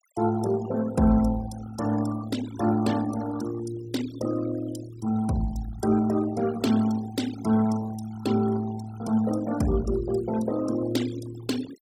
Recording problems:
denoising artefacts; signal-to-artefact ratio 14 dB

